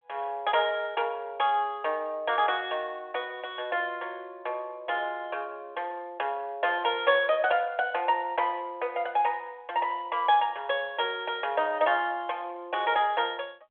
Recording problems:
telephone audio; 320 Hz to 3.4 kHz, G.726

